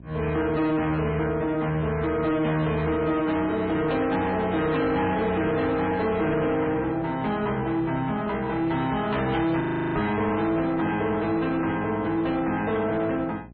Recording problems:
treble cut off; nothing above 4.2 kHz
lossy compression; MP3, log-spectral distance 2 dB
distortion; soft clipping, signal-to-distortion ratio 10 dB
electrical hum; 60 Hz, harmonics up to 720 Hz, SNR 21 dB
audio freezing; at 9.5 s
microphone thump; at 10 s; peak -3 dB vs average level

